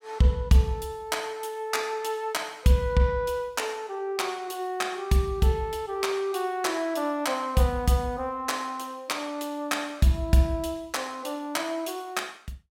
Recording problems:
none

